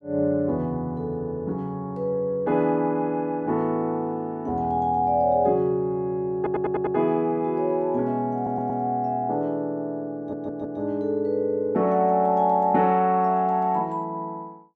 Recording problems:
stutter; at 6.5 s, at 8.5 s and at 10 s

